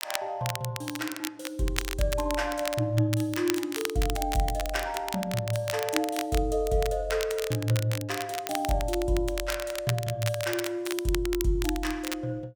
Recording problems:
crackle; vinyl, SNR 7 dB

